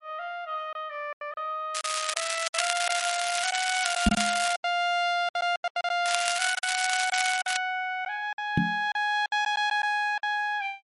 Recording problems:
lossy codec; MP3, log-spectral distance 6 dB, nothing above 9.2 kHz
lost packets; 9% of the sound replaced, filled with silence
crackling; from 1.5 to 4.5 s and from 6 to 7.5 s; loose cable, SNR 2 dB
microphone bump; at 4 s and at 8.5 s; peak +9 dB vs average level

